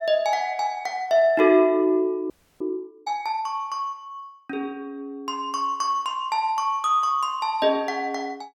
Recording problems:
frozen audio; at 2.5 s

